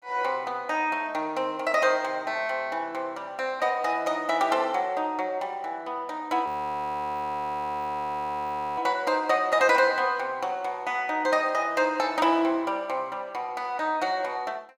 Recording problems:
frozen audio; at 6.5 s for 2.5 s

